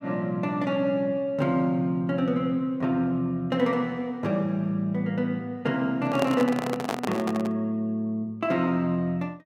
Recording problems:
microphone handling noise; from 6 to 7.5 s; peak +1 dB vs average level

